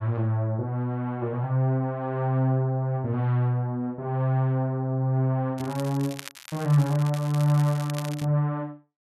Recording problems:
crackle; from 5.5 to 8.5 s; loose cable, SNR 17 dB

